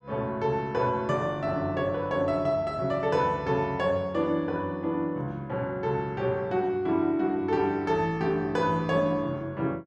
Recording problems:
none

